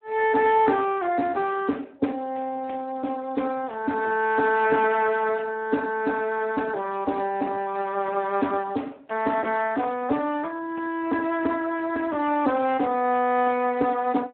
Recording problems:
phone line; 220 Hz to 2.9 kHz, Speex

